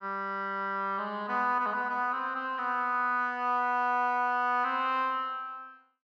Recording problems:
none

